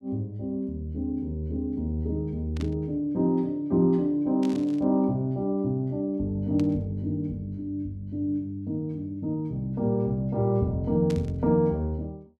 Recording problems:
burst of static; 4 times, first at 2.5 s; peak -10 dB vs average level

